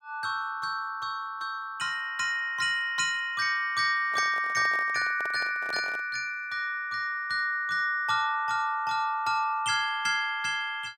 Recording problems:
handling noise; from 4 to 6 s; peak -8 dB vs average level

